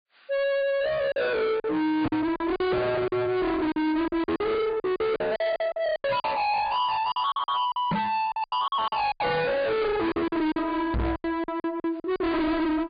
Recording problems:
treble cut off; nothing above 4.8 kHz
lossy codec; AAC, log-spectral distance 2 dB
distorted audio; soft clipping, signal-to-distortion ratio 6 dB
lost packets; 13% of the sound replaced, filled with silence
microphone thump; at 2 s, at 8 s and at 11 s; peak +7 dB vs average level

